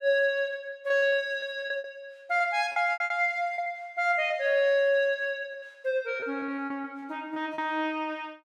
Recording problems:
lost packets; 10% of the sound replaced, filled with repeated pitch periods

